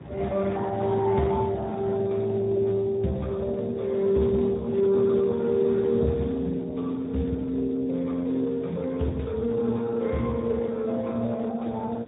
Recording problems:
treble cut off; nothing above 3.8 kHz
lossy compression; Speex, log-spectral distance 3 dB
wind on the microphone; below 390 Hz, SNR 18 dB

